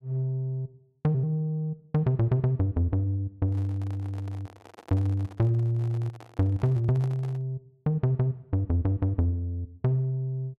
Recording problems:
handling noise; from 3.5 to 7.5 s; peak -12 dB vs average level

